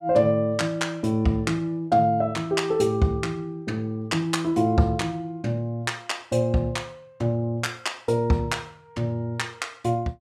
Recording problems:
none

